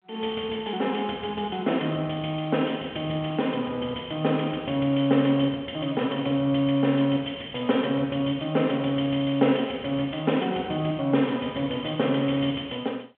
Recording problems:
phone line; 190 Hz to 3.5 kHz, G.726

